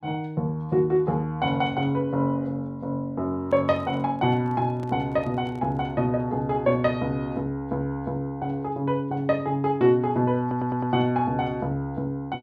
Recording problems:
microphone handling noise; from 3.5 to 6 s; peak -11 dB vs average level
audio stuttering; at 10 s

